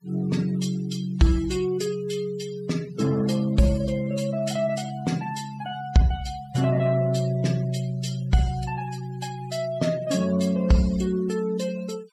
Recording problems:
noise reduction artefacts; signal-to-artefact ratio 19 dB

